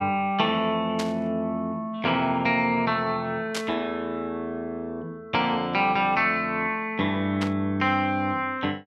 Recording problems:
burst of static; at 1 s, at 3.5 s and at 7.5 s; peak -2 dB vs average level

